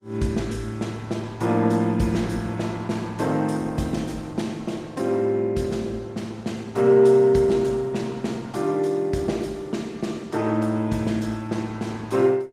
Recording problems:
lossy compression; Opus, log-spectral distance 3 dB, nothing above 15.5 kHz

